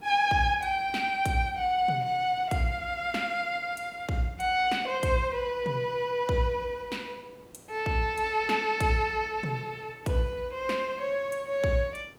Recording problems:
hiss; slope -7 dB per octave, SNR 25 dB

